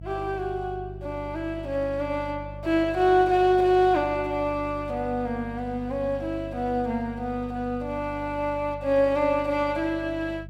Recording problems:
electrical hum; 50 Hz, harmonics up to 350 Hz, SNR 15 dB

